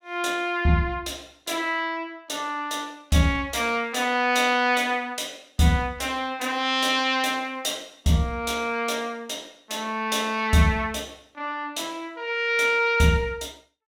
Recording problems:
none

